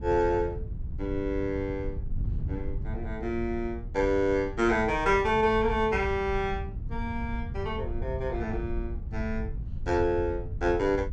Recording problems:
wind on the microphone; below 98 Hz, SNR 8 dB

